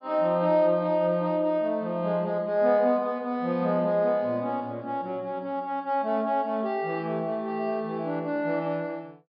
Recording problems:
treble cut off; nothing above 5.5 kHz

